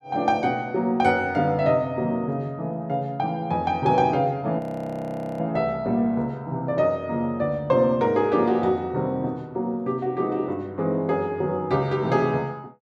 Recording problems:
audio freezing; at 4.5 s for 1 s

